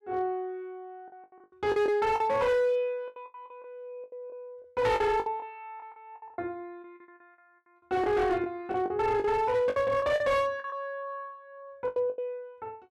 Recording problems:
distorted audio; hard clipping, signal-to-distortion ratio 11 dB
packet loss; 12% of the sound replaced, filled with the last packet

